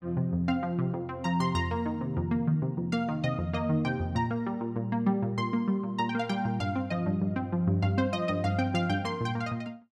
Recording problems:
none

